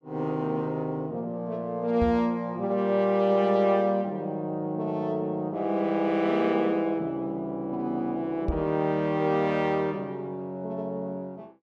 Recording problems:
microphone thump; at 2 s and at 8.5 s; peak +2 dB vs average level

